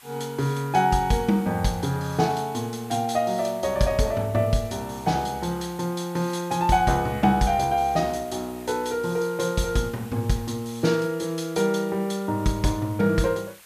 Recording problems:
hiss; SNR 22 dB

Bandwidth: 14.5 kHz